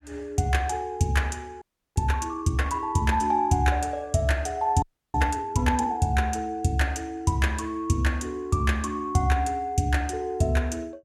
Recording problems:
frozen audio; at 1.5 s and at 5 s

